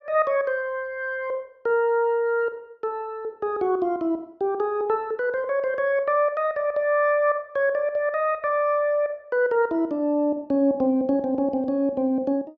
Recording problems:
none

